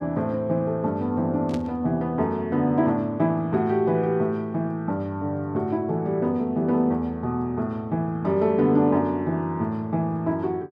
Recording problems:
burst of static; at 1.5 s; peak -13 dB vs average level

